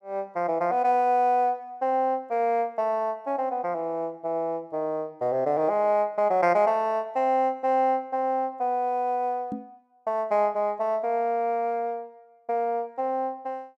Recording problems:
microphone bump; at 9.5 s; peak -4 dB vs average level

